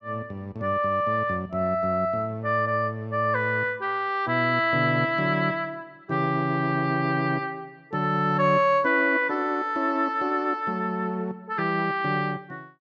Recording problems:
none

